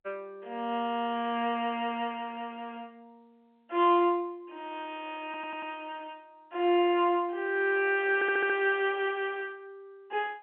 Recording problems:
phone line; 260 Hz to 3.4 kHz, G.711
audio stuttering; at 5.5 s and at 8 s

